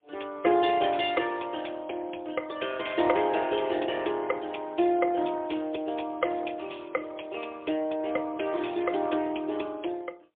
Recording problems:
phone line; 280 Hz to 3.6 kHz, AMR-NB, then MP3

